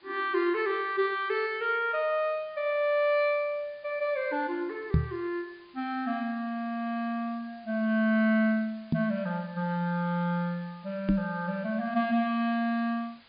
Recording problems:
treble missing; nothing above 4.9 kHz
hiss; SNR 28 dB
microphone thump; at 5 s, at 9 s and at 11 s; peak +8 dB vs average level

